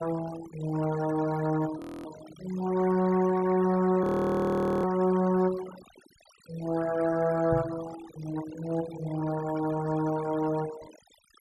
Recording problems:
denoising artefacts; signal-to-artefact ratio 16 dB
frozen audio; at 2 s and at 4 s for 1 s
knock on the microphone; at 7.5 s; peak 0 dB vs average level

